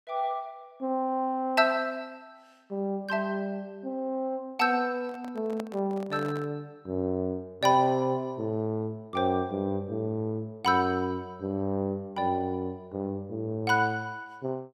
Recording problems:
handling noise; from 5 to 6.5 s; peak -6 dB vs average level

